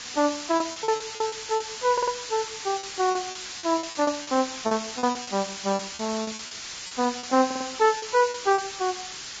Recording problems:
lossy codec; Vorbis, log-spectral distance 19 dB
background hiss; slope +3 dB per octave, SNR 8 dB
lost packets; 13% of the sound replaced, filled with repeated pitch periods
stutter; at 2 s and at 7.5 s

